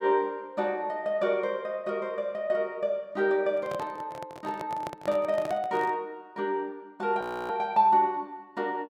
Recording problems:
microphone handling noise; from 3.5 to 6 s; peak -4 dB vs average level
audio freezing; at 7 s

